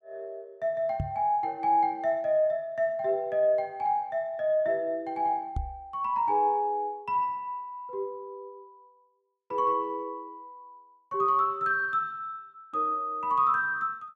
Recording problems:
knock on the microphone; at 1 s and at 5.5 s; peak 0 dB vs average level

